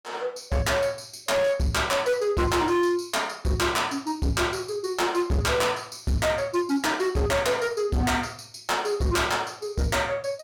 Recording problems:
distorted audio; hard clipping, signal-to-distortion ratio 8 dB

